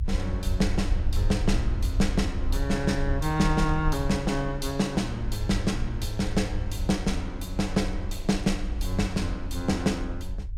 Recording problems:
rumble; below 68 Hz, SNR 5 dB

